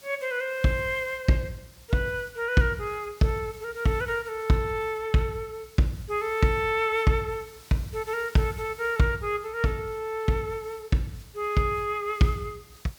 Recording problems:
background hiss; slope 0 dB per octave, SNR 23 dB

